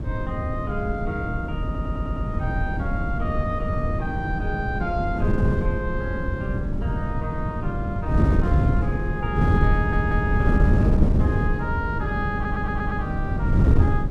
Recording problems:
wind noise; below 170 Hz, SNR -5 dB
stutter; at 1.5 s, at 10 s and at 12 s

